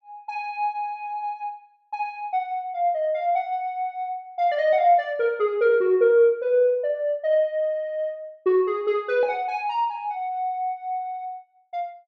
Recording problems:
none

